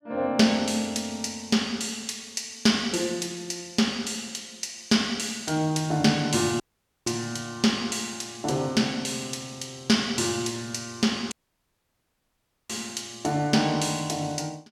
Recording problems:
dropout; at 6.5 s and at 11 s for 1.5 s

